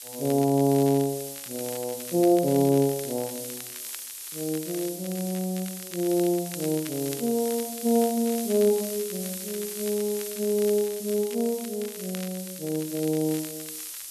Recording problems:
hiss; SNR 9 dB
crackling; vinyl, SNR 18 dB

